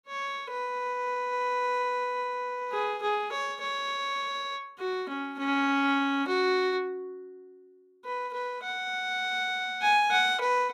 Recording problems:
none

